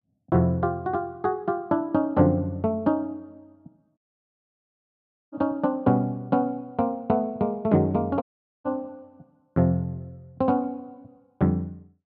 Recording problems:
audio cutting out; at 4 s for 1.5 s and at 8 s

